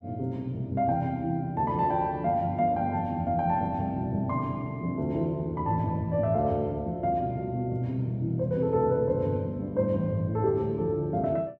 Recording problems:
none

